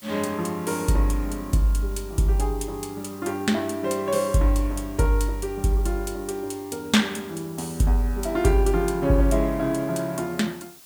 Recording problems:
background hiss; slope 0 dB per octave, SNR 22 dB

